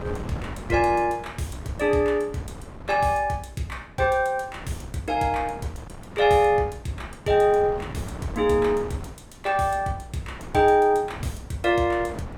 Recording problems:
wind noise; below 550 Hz, SNR 16 dB

